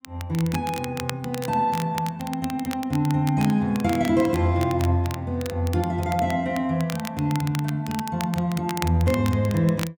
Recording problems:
crackling; vinyl, SNR 14 dB

